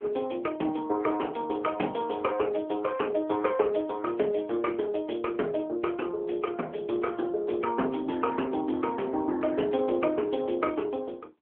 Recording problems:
phone line; 260 Hz to 2.3 kHz, AMR-NB

